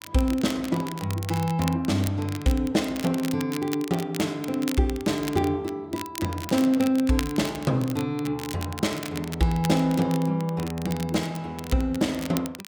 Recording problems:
crackle; vinyl, SNR 13 dB

